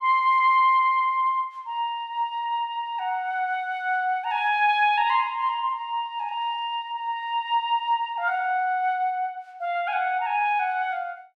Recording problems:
none

